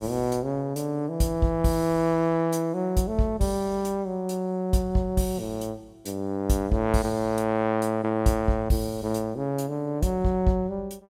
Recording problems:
none

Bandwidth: 16 kHz